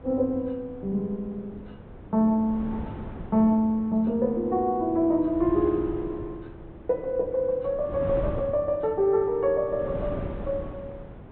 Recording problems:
low-pass filter; nothing above 4 kHz
wind on the microphone; below 370 Hz, SNR 14 dB

